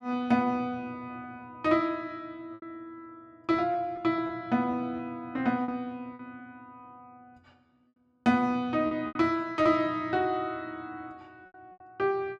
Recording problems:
lost packets; 5% of the sound replaced, filled with repeated pitch periods

